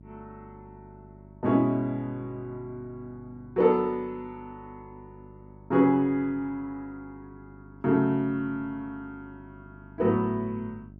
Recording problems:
hum; 50 Hz, harmonics up to 650 Hz, SNR 23 dB

